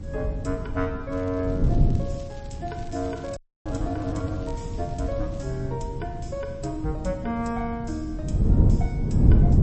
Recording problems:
codec artefacts; MP3, log-spectral distance 2 dB, nothing above 8 kHz
hiss; SNR 25 dB
wind noise; below 160 Hz, SNR -4 dB
crackle; from 1 to 5.5 s; loose cable, SNR 23 dB
dropout; at 3.5 s

